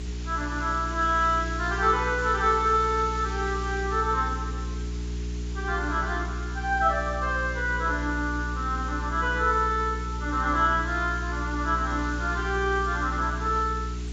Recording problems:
lossy codec; AAC, log-spectral distance 7 dB
hum; 60 Hz, harmonics up to 420 Hz, SNR 7 dB
hiss; slope 0 dB per octave, SNR 18 dB

